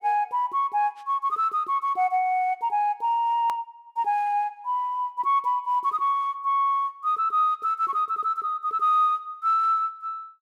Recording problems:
click at an edit; at 3.5 s

